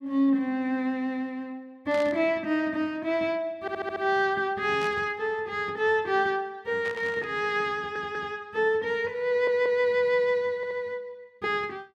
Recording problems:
static burst; at 2 s, at 5 s and at 7 s; peak -10 dB vs average level
audio stuttering; 4 times, first at 3.5 s

